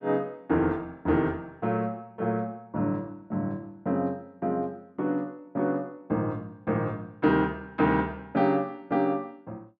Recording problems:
none

